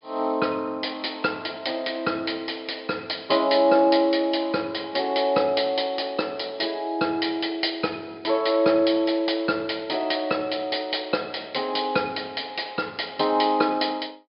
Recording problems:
treble missing; nothing above 5.5 kHz

